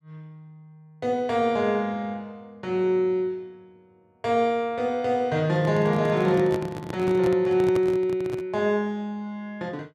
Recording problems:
handling noise; from 5.5 to 8.5 s; peak -3 dB vs average level

